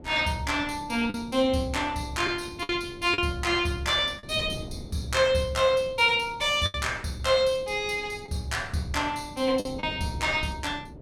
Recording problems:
wind on the microphone; below 300 Hz, SNR 17 dB
packet loss; 4% of the sound replaced, filled with the last packet

